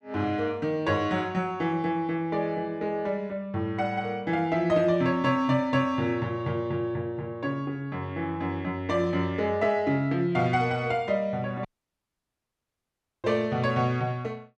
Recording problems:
dropout; at 12 s for 1.5 s

